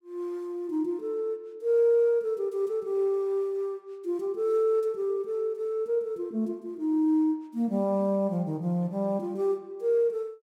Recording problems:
none

